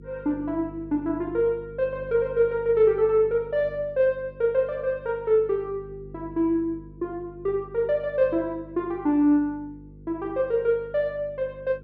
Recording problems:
electrical hum; 50 Hz, harmonics up to 500 Hz, SNR 20 dB

